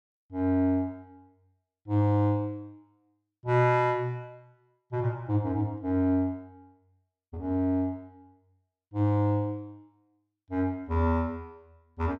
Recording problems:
none

